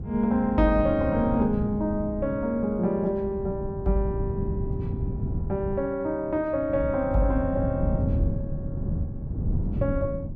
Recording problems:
wind on the microphone; below 170 Hz, SNR 5 dB

